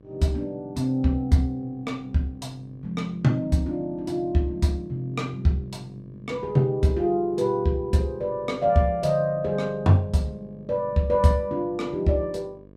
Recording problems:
hum; 50 Hz, harmonics up to 1.2 kHz, SNR 24 dB

